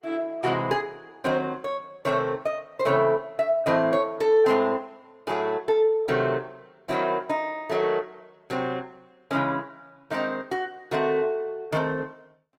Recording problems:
codec artefacts; Opus, log-spectral distance 2 dB, nothing above 20.1 kHz

